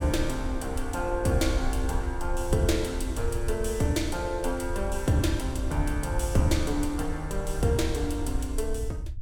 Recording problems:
rumble; below 68 Hz, SNR 5 dB

